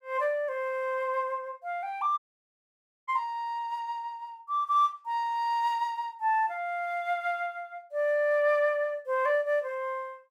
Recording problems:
dropout; at 2 s for 1 s

